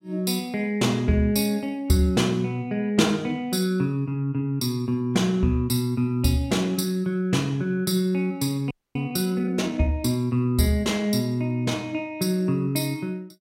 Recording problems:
audio freezing; at 8.5 s

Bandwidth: 16 kHz